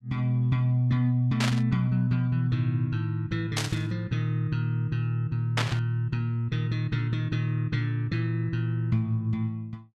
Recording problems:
static burst; at 1.5 s, at 3.5 s and at 5.5 s; peak +4 dB vs average level

